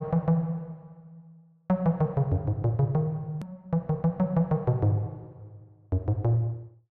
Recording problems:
edit click; at 3.5 s

